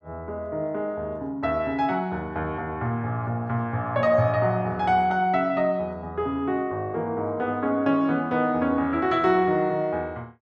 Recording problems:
none

